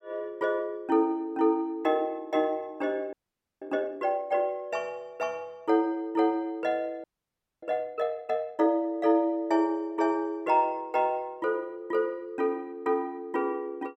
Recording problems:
frozen audio; at 3 s and at 7 s for 0.5 s

